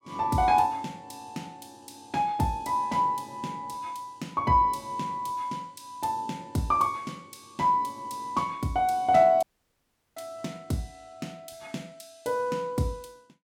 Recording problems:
audio cutting out; at 9.5 s for 0.5 s

